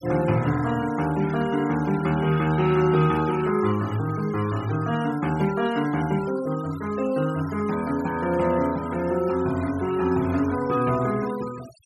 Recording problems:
noise reduction artefacts; signal-to-artefact ratio 18 dB

